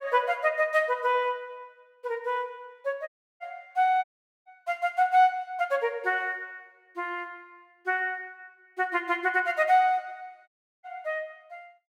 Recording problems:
audio cutting out; at 3 s, at 4 s and at 10 s

